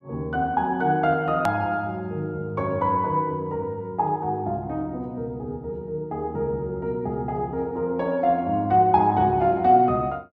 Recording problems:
hard cut with a click; at 1.5 s

